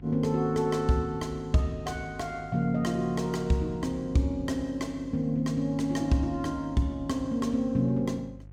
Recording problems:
hum; 50 Hz, harmonics up to 500 Hz, SNR 19 dB

